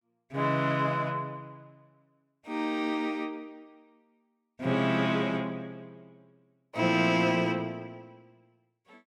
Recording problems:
none

